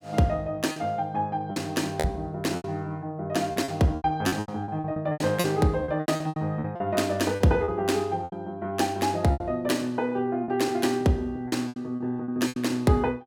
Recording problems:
lost packets; 12% of the sound replaced, filled with repeated pitch periods

